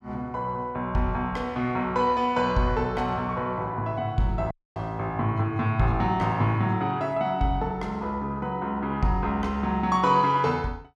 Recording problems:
dropout; at 4.5 s

